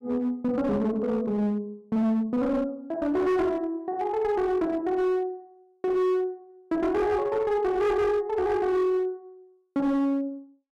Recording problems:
distorted audio; hard clipping, uneven, signal-to-distortion ratio 10 dB

